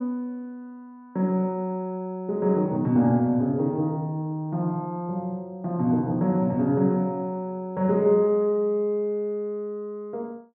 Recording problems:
none

